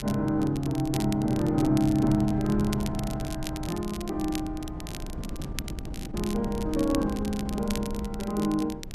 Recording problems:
wind on the microphone; below 210 Hz, SNR 10 dB
crackling; vinyl, SNR 14 dB

